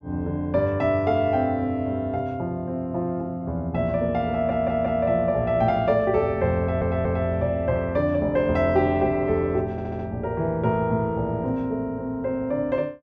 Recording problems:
stutter; at 4.5 s, at 6.5 s and at 9.5 s

